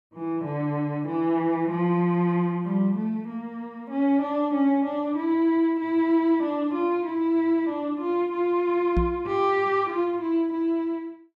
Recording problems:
knock on the microphone; at 9 s; peak +3 dB vs average level

